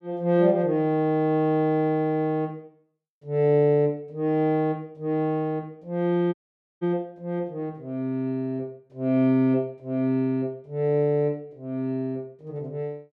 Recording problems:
dropout; at 6.5 s

